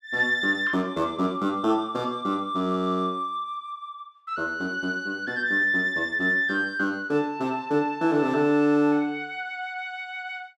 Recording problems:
none

